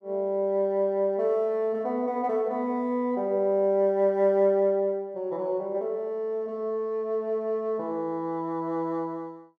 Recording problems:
none

